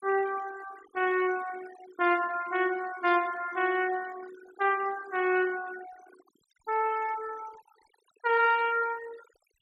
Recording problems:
denoising artefacts; signal-to-artefact ratio 18 dB

